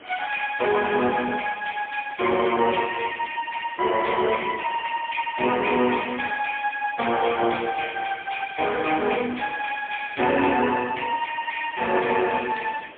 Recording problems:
phone line; 240 Hz to 3.4 kHz, AMR-NB, then MP3
background hiss; SNR 21 dB

